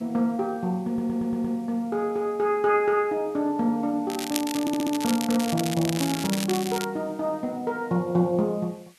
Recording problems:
hiss; SNR 29 dB
audio stuttering; at 1 s and at 4.5 s
crackle; from 4 to 7 s; loose cable, SNR 7 dB
microphone handling noise; from 4.5 to 7 s; peak -11 dB vs average level

